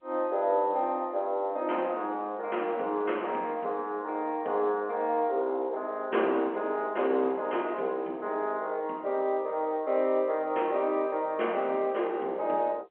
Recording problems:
telephone audio; 220 Hz to 3.3 kHz, G.711

